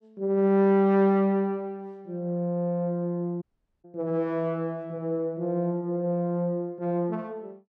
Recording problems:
dropout; at 3.5 s

